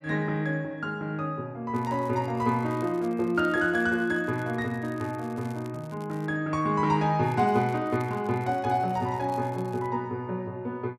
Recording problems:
crackling; from 1.5 to 6.5 s and from 7 to 10 s; loose cable, SNR 27 dB

